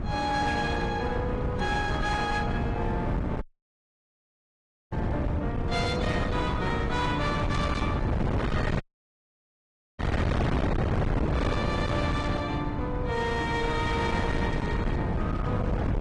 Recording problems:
codec artefacts; AAC, log-spectral distance 2 dB, nothing above 10.1 kHz
distorted audio; hard clipping, signal-to-distortion ratio 6 dB
wind on the microphone; below 380 Hz, SNR -1 dB
audio cutting out; at 3.5 s for 1.5 s and at 9 s for 1 s

